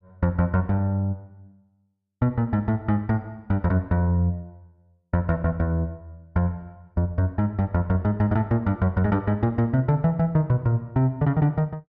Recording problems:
none

